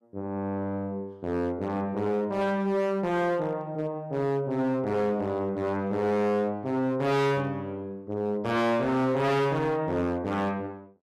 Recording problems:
distorted audio; hard clipping, signal-to-distortion ratio 7 dB

